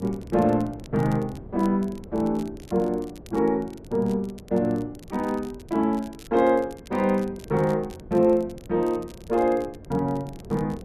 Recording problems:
wind noise; below 370 Hz, SNR 19 dB
crackling; vinyl, SNR 27 dB

